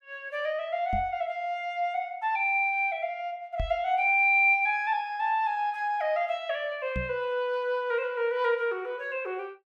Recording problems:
knock on the microphone; at 1 s, at 3.5 s and at 7 s; peak -2 dB vs average level

